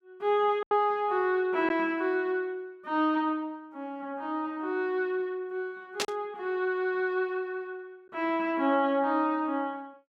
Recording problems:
packet loss; 1.2% of the sound replaced, filled with silence
burst of static; at 6 s; peak +4 dB vs average level

